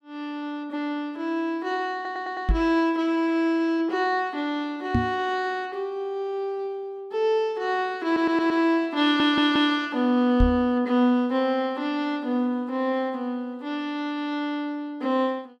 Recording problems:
audio stuttering; at 2 s, at 8 s and at 9 s
microphone bump; at 2.5 s, at 5 s and at 10 s; peak +5 dB vs average level

